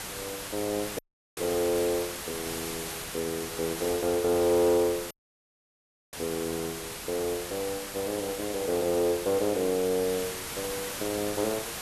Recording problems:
background hiss; slope -1 dB per octave, SNR 6 dB
dropout; at 1 s and at 5 s for 1 s

